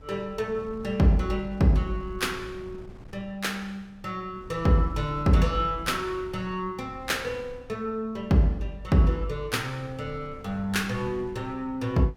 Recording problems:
wind on the microphone; below 180 Hz, SNR 19 dB

